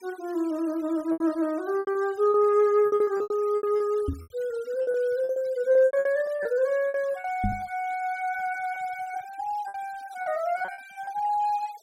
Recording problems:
denoising artefacts; signal-to-artefact ratio 26 dB
packet loss; 13% of the sound replaced, filled with repeated pitch periods
microphone bump; at 4 s and at 7.5 s; peak +1 dB vs average level

